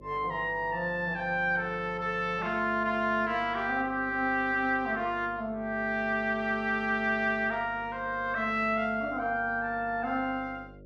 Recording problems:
hum; 50 Hz, harmonics up to 600 Hz, SNR 21 dB

